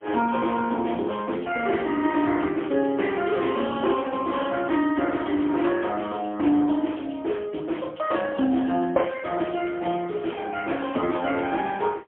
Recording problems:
telephone audio; 220 Hz to 3.3 kHz, AMR-NB, then MP3

